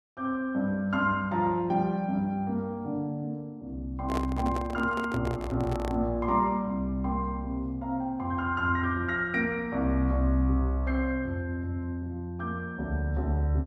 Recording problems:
microphone handling noise; from 4 to 6 s; peak 0 dB vs average level

